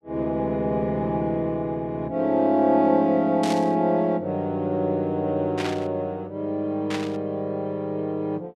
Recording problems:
burst of static; at 3.5 s, at 5.5 s and at 7 s; peak -4 dB vs average level

